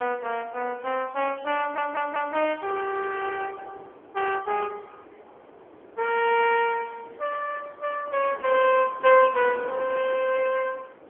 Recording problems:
telephone audio; 320 Hz to 3.2 kHz, AMR-NB
wind noise; below 840 Hz, SNR 20 dB
stutter; at 1.5 s

